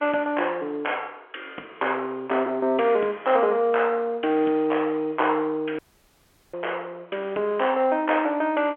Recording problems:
phone line; 260 Hz to 3.3 kHz, G.711
audio cutting out; at 6 s for 0.5 s

